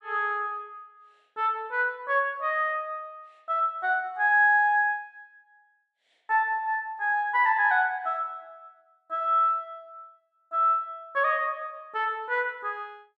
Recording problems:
none

